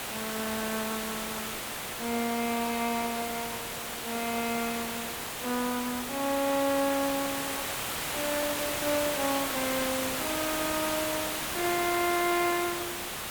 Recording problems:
hiss; SNR 1 dB

